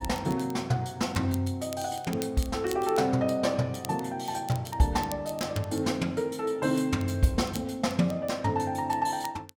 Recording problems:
crackling; vinyl, SNR 18 dB

